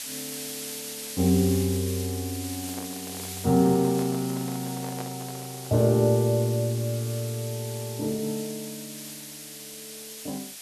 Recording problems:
hiss; SNR 10 dB
microphone handling noise; from 2.5 to 6 s; peak -8 dB vs average level

